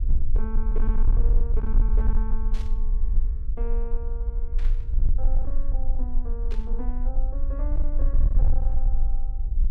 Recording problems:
distortion; hard clipping, signal-to-distortion ratio 12 dB
hum; 50 Hz, harmonics up to 600 Hz, SNR 19 dB
rumble; below 40 Hz, strongest tone 20 Hz, SNR -13 dB
static burst; at 2.5 s, at 4.5 s and at 6.5 s; peak -3 dB vs average level

